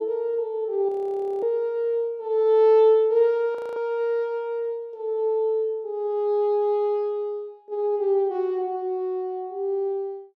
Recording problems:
audio freezing; at 1 s for 0.5 s and at 3.5 s

